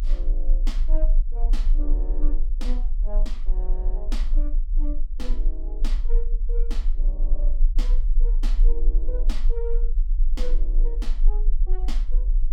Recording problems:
low-frequency rumble; below 32 Hz, strongest tone 28 Hz, SNR -14 dB

